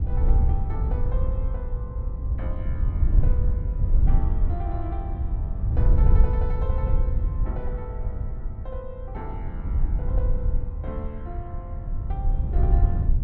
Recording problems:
wind on the microphone; below 74 Hz, SNR -13 dB

